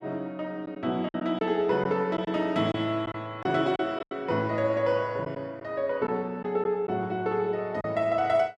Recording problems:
packet loss; 5% of the sound replaced, filled with silence

